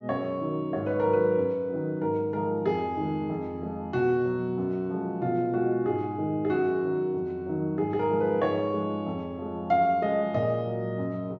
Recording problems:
treble missing; nothing above 7.5 kHz

